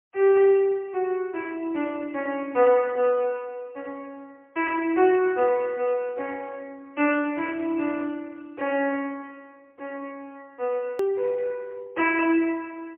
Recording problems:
phone line; 260 Hz to 3.1 kHz, AMR-NB, then MP3
click at an edit; at 11 s

